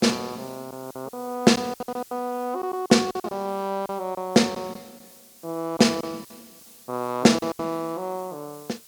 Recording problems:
hiss; SNR 22 dB
lost packets; 9% of the sound replaced, filled with silence

